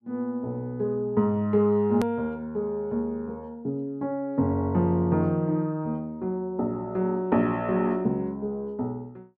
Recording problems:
click at an edit; at 2 s

